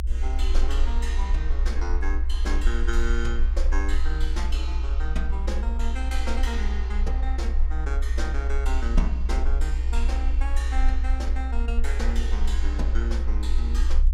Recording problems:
rumble; below 60 Hz, SNR -8 dB

